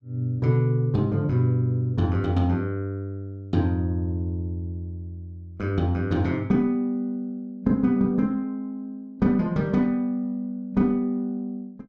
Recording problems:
none

